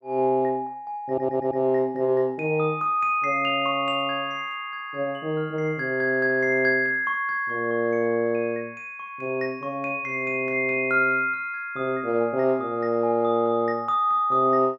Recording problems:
audio stuttering; at 1 s

